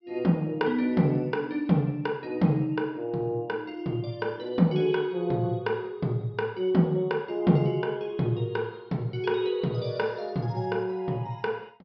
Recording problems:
low-pass filter; nothing above 5.5 kHz

